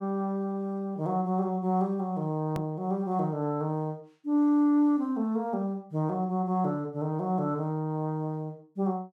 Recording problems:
edit click; at 2.5 s

